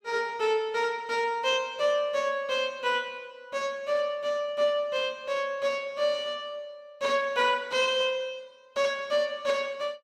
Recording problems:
none

